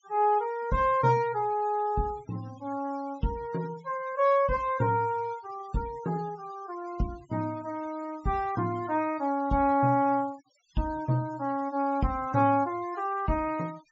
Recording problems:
treble missing; nothing above 8 kHz
noise reduction artefacts; signal-to-artefact ratio 22 dB

